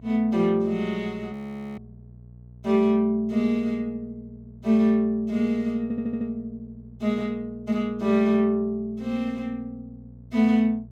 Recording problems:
hum; 60 Hz, harmonics up to 480 Hz, SNR 22 dB
frozen audio; at 1.5 s
audio stuttering; at 6 s

